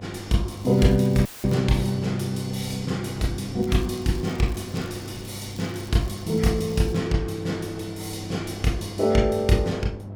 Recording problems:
hum; 50 Hz, harmonics up to 800 Hz, SNR 13 dB
wind noise; below 450 Hz, SNR 19 dB
crackle; until 1.5 s and from 3.5 to 7 s; loose cable, SNR 24 dB
audio cutting out; at 1.5 s

